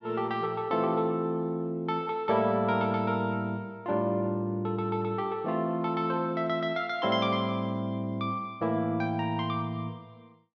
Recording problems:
none

